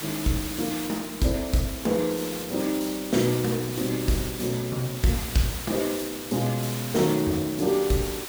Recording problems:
electrical hum; 50 Hz, harmonics up to 600 Hz, SNR 26 dB
hiss; slope -1 dB per octave, SNR 8 dB

